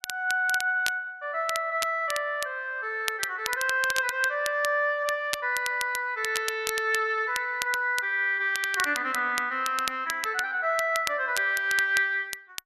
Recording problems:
crackling; vinyl, SNR 10 dB

